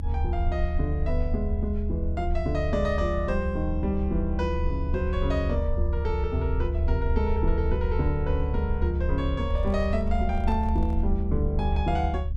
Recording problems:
rumble; below 74 Hz, SNR -1 dB
handling noise; from 9.5 to 11 s; peak -12 dB vs average level

